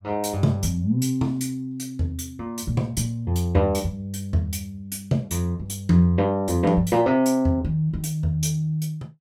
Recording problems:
none

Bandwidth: 17 kHz